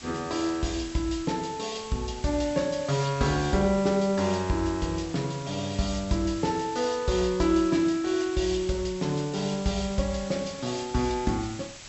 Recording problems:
treble missing; nothing above 7.9 kHz
background hiss; slope 0 dB per octave, SNR 15 dB

